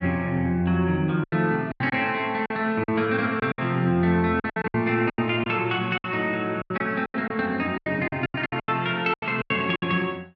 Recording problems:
lost packets; 14% of the sound replaced, filled with silence

